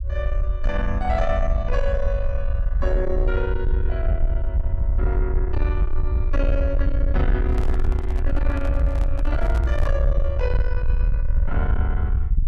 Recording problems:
distorted audio; soft clipping, signal-to-distortion ratio 11 dB
low-frequency rumble; below 62 Hz, SNR -5 dB
microphone handling noise; from 7.5 to 10 s; peak -3 dB vs average level

